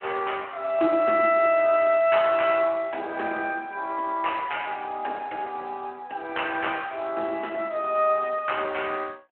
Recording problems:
phone line; 280 Hz to 3.1 kHz, Speex

